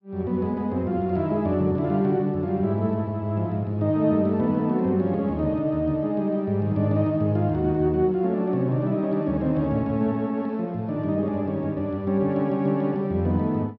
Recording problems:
low-pass filter; nothing above 5.6 kHz

